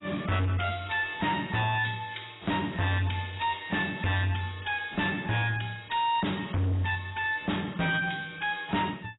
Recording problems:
lossy compression; AAC, log-spectral distance 7 dB, nothing above 3.8 kHz
distortion; hard clipping, signal-to-distortion ratio 6 dB

